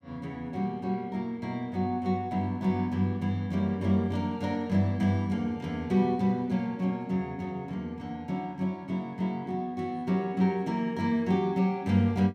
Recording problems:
none

